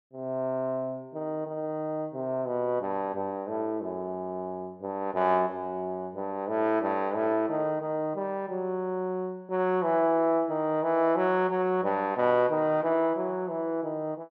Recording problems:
none

